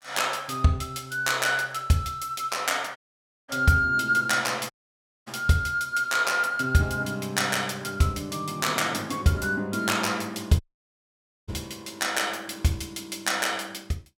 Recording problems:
audio cutting out; at 3 s for 0.5 s, at 4.5 s for 0.5 s and at 11 s for 1 s

